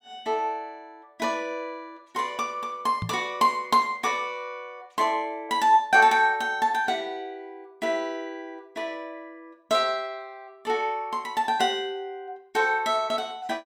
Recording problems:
microphone thump; at 3 s; peak -2 dB vs average level

